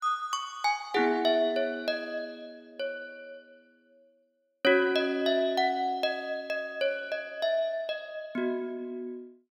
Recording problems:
none

